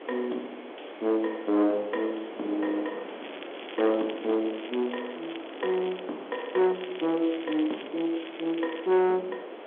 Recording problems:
phone line; 260 Hz to 3.5 kHz, G.711
distortion; soft clipping, signal-to-distortion ratio 9 dB
hiss; SNR 13 dB
wind noise; below 760 Hz, SNR 20 dB
crackle; from 3 to 6 s and from 6.5 to 9 s; loose cable, SNR 17 dB

